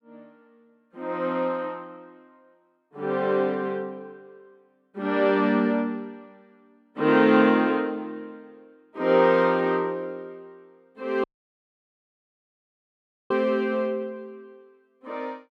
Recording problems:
dropout; at 11 s for 2 s

